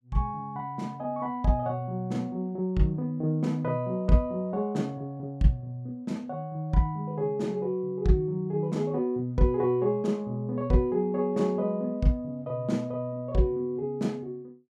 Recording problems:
none

